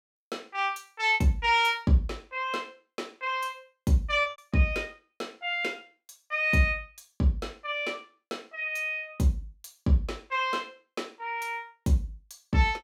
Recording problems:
packet loss; 2% of the sound replaced, filled with repeated pitch periods

